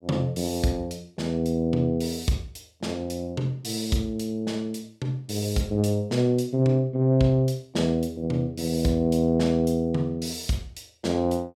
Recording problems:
none

